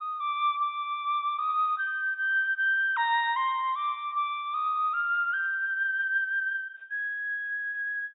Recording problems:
treble cut off; nothing above 4 kHz

